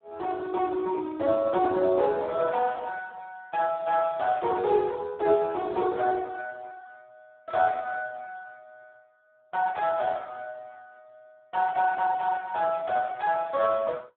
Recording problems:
telephone audio; 300 Hz to 2.2 kHz, Speex

